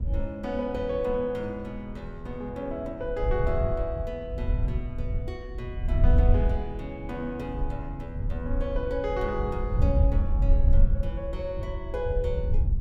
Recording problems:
wind noise; below 76 Hz, SNR -3 dB

